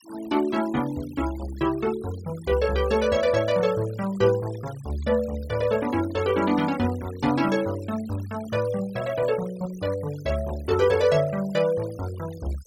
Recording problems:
denoising artefacts; signal-to-artefact ratio 19 dB

